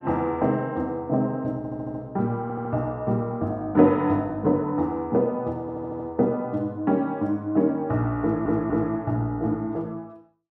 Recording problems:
stutter; 4 times, first at 1.5 s

